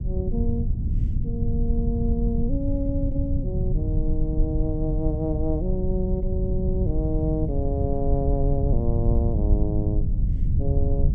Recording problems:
low-frequency rumble; below 100 Hz, SNR -3 dB

